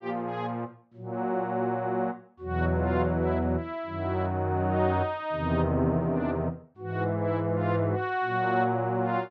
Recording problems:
none

